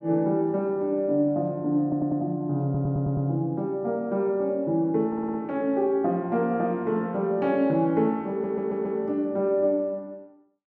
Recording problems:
audio stuttering; 4 times, first at 2 s

